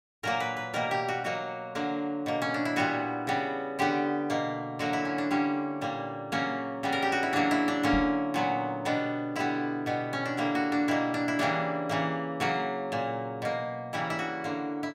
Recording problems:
microphone bump; at 8 s; peak -2 dB vs average level

